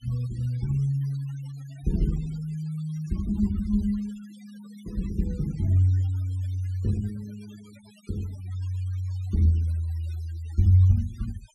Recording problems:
noise reduction artefacts; signal-to-artefact ratio 26 dB

